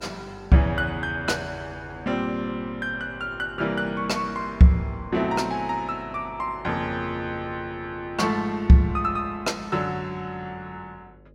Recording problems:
electrical hum; 50 Hz, harmonics up to 600 Hz, SNR 24 dB

